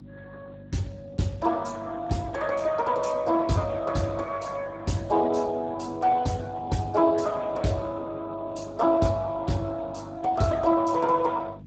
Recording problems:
codec artefacts; Speex, log-spectral distance 4 dB, nothing above 7.8 kHz
mains hum; 50 Hz, harmonics up to 350 Hz, SNR 18 dB

